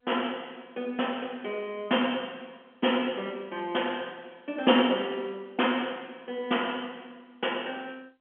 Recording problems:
telephone audio; 220 Hz to 3.3 kHz, G.711

